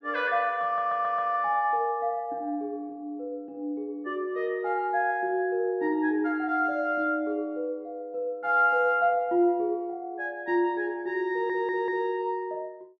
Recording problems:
audio stuttering; at 0.5 s and at 11 s

